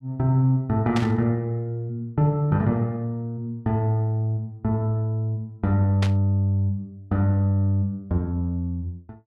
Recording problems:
static burst; at 1 s and at 6 s; peak -3 dB vs average level

